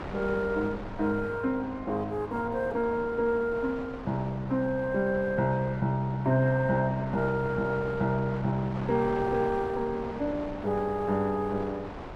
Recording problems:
wind noise; below 950 Hz, SNR 12 dB

